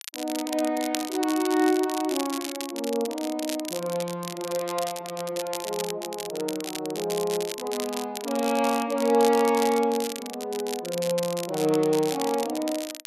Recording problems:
crackling; vinyl, SNR 9 dB

